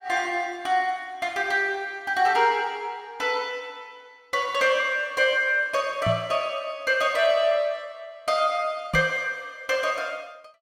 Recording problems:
microphone bump; at 6 s and at 9 s; peak 0 dB vs average level

